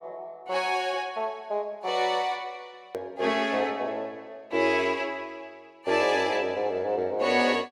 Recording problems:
click at an edit; at 3 s

